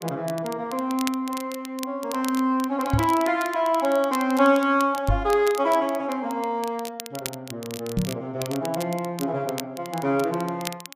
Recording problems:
crackle; vinyl, SNR 15 dB
knock on the microphone; at 3 s, at 5 s and at 8 s; peak +5 dB vs average level

